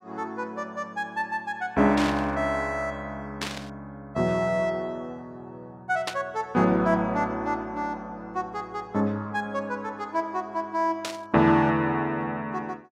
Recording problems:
burst of static; 4 times, first at 2 s; peak +1 dB vs average level

